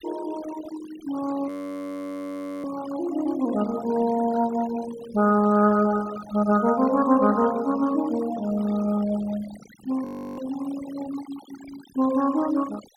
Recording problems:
denoising artefacts; signal-to-artefact ratio 16 dB
frozen audio; at 1.5 s for 1 s and at 10 s

